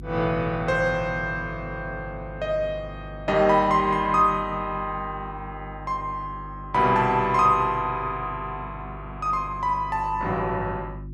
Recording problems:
hum; 50 Hz, harmonics up to 350 Hz, SNR 15 dB

